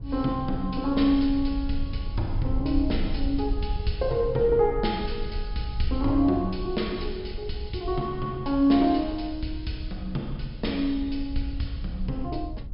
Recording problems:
treble cut off; nothing above 5.5 kHz
low-frequency rumble; below 62 Hz, strongest tone 20 Hz, SNR 9 dB

